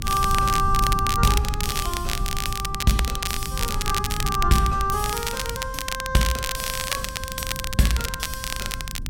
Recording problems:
rumble; below 110 Hz, SNR 6 dB
crackle; vinyl, SNR 4 dB

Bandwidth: 16.5 kHz